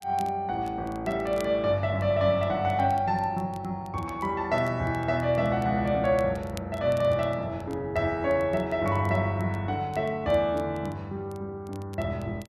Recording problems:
crackling; vinyl, SNR 27 dB

